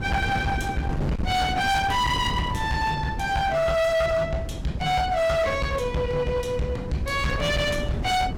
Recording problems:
distorted audio; hard clipping, uneven, signal-to-distortion ratio 7 dB
wind noise; below 320 Hz, SNR 8 dB

